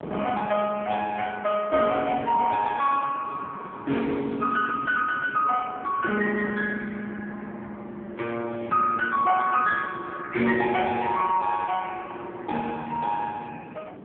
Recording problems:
telephone audio; 170 Hz to 2.5 kHz, AMR-NB
wind on the microphone; below 540 Hz, SNR 17 dB

